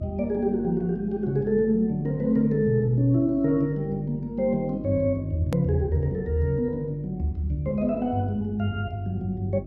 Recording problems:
treble cut off; nothing above 8 kHz
electrical hum; 50 Hz, harmonics up to 350 Hz, SNR 17 dB
hard cut with a click; at 5.5 s

